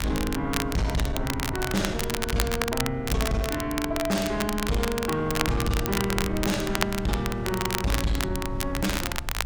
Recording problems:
distorted audio; soft clipping, signal-to-distortion ratio 8 dB
rumble; below 110 Hz, SNR 9 dB
wind noise; below 830 Hz, SNR 19 dB
crackle; vinyl, SNR 4 dB

